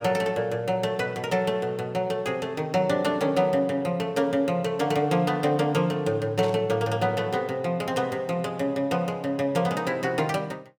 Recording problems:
burst of static; at 6.5 s; peak -10 dB vs average level

